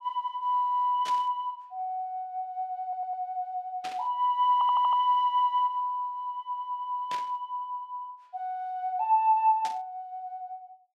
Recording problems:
burst of static; 4 times, first at 1 s; peak -7 dB vs average level
audio stuttering; at 3 s and at 4.5 s

